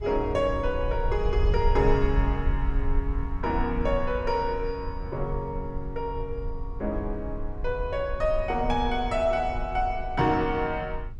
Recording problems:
low-frequency rumble; below 60 Hz, SNR 5 dB

